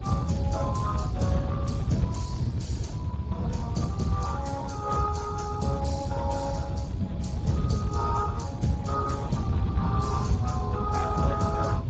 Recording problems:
lossy codec; Vorbis, then Speex, log-spectral distance 3 dB, nothing above 7.3 kHz
low-frequency rumble; below 160 Hz, SNR -1 dB

